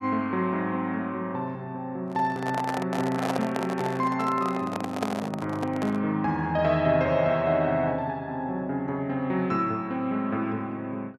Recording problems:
handling noise; from 2 to 6 s; peak +2 dB vs average level

